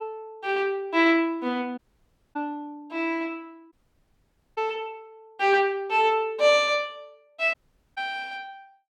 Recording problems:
dropout; at 2 s for 0.5 s, at 3.5 s for 1 s and at 7.5 s

